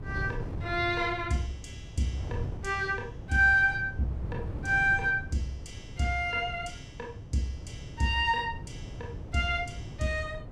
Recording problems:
wind noise; below 160 Hz, SNR 11 dB

